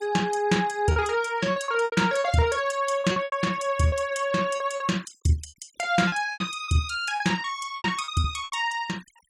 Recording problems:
denoising artefacts; signal-to-artefact ratio 24 dB
lost packets; 12% of the sound replaced, filled with repeated pitch periods

